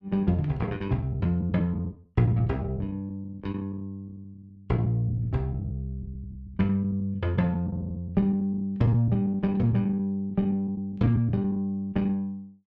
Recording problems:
packet loss; 11% of the sound replaced, filled with the last packet

